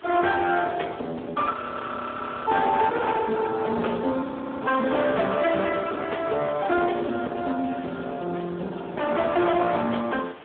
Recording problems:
telephone audio; 240 Hz to 3.6 kHz, Speex
distortion; hard clipping, uneven, signal-to-distortion ratio 9 dB
wind on the microphone; below 2.4 kHz, SNR 23 dB
frozen audio; at 1.5 s for 1 s and at 4 s

